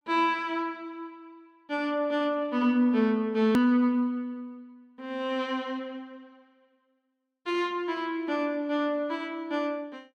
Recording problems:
edit click; at 3.5 s

